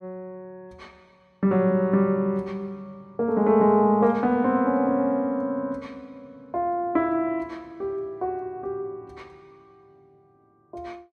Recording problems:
none

